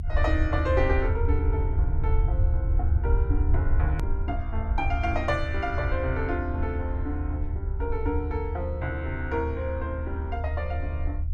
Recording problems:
low-frequency rumble; below 78 Hz, SNR -3 dB
click at an edit; at 4 s

